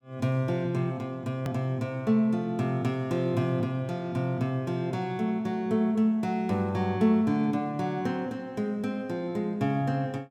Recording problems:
edit click; at 1.5 s

